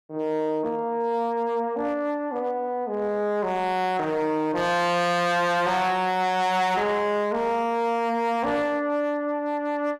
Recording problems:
distortion; hard clipping, signal-to-distortion ratio 7 dB

